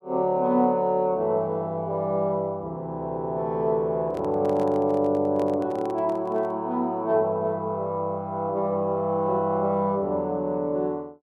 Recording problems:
microphone handling noise; from 4 to 6.5 s; peak -10 dB vs average level

